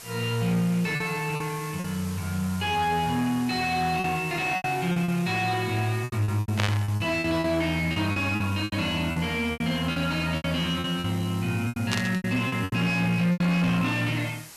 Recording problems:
distorted audio; soft clipping, signal-to-distortion ratio 10 dB
hiss; slope -3 dB per octave, SNR 15 dB
packet loss; 11% of the sound replaced, filled with repeated pitch periods
burst of static; at 6.5 s and at 12 s; peak +2 dB vs average level

